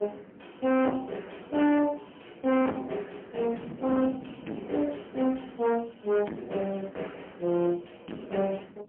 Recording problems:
telephone audio; 170 Hz to 3.3 kHz, AMR-NB, then MP3
distorted audio; hard clipping, signal-to-distortion ratio 6 dB
wind noise; below 520 Hz, SNR 19 dB

